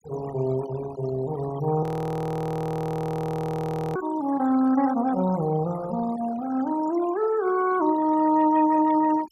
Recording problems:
noise reduction artefacts; signal-to-artefact ratio 15 dB
audio freezing; at 2 s for 2 s

